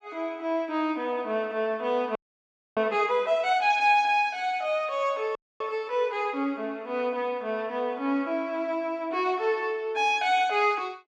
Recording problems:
audio freezing; at 2 s for 0.5 s and at 5.5 s

